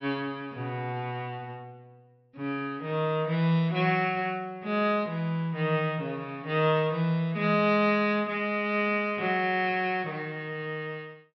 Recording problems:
low-pass filter; nothing above 5.6 kHz

